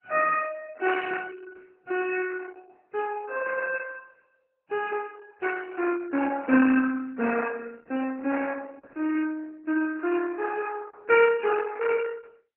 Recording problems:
lossy compression; MP3, then Opus, log-spectral distance 5 dB, nothing above 2.6 kHz

